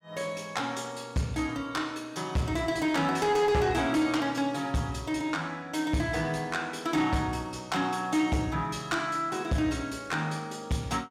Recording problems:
distortion; soft clipping, signal-to-distortion ratio 12 dB

